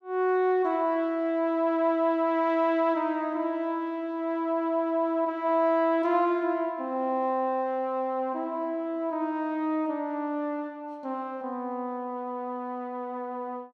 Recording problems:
none

